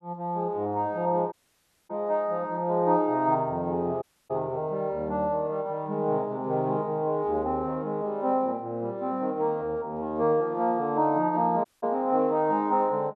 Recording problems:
audio cutting out; at 1.5 s for 0.5 s, at 4 s and at 12 s

